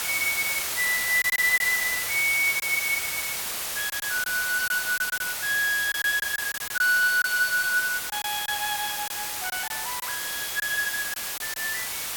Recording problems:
background hiss; slope +1 dB per octave, SNR 3 dB
packet loss; 5% of the sound replaced, filled with silence

